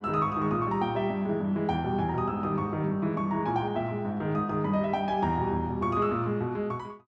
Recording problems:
none

